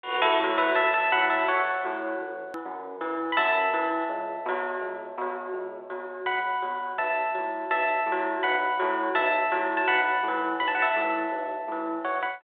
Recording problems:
telephone audio; 280 Hz to 3.6 kHz, G.726
click at an edit; at 2.5 s

